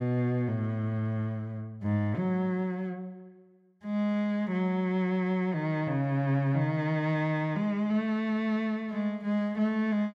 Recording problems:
none

